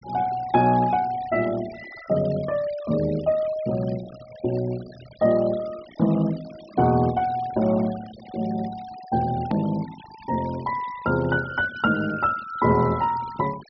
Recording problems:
treble missing; nothing above 5.5 kHz
denoising artefacts; signal-to-artefact ratio 20 dB
hard cut with a click; at 9.5 s

